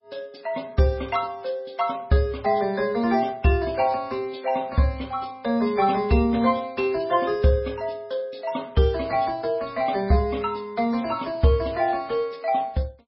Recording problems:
codec artefacts; MP3, log-spectral distance 3 dB, nothing above 5.2 kHz

